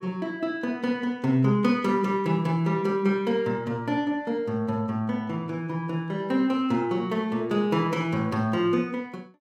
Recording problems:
none

